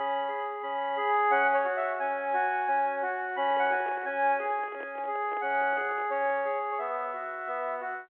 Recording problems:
phone line; 300 Hz to 3.3 kHz, G.711
handling noise; from 3.5 to 6.5 s; peak -11 dB vs average level

